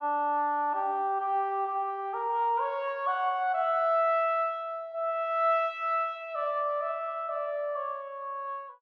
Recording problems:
none

